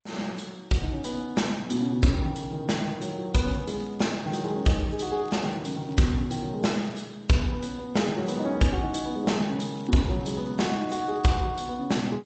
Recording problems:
codec artefacts; MP3, then G.722, log-spectral distance 4 dB, nothing above 7.8 kHz
crackle; from 3.5 to 6 s, at 6.5 s and from 10 to 11 s; loose cable, SNR 29 dB

